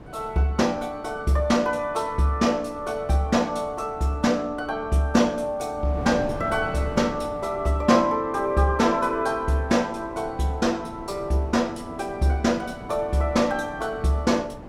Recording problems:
wind noise; below 520 Hz, SNR 16 dB

